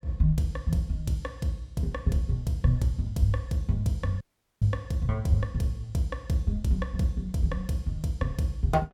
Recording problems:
audio cutting out; at 4 s

